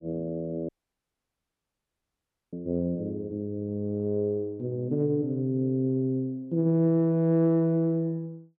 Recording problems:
audio cutting out; at 0.5 s for 2 s

